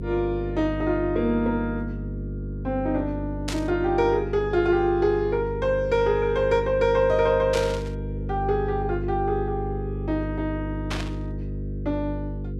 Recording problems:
hum; 50 Hz, harmonics up to 500 Hz, SNR 7 dB
burst of static; at 3.5 s, at 7.5 s and at 11 s; peak -3 dB vs average level

